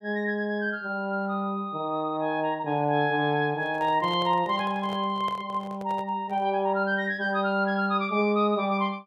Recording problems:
handling noise; from 3.5 to 6.5 s; peak -9 dB vs average level

